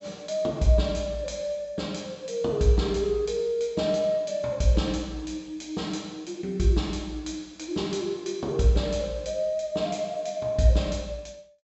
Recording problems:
low-pass filter; nothing above 7.8 kHz

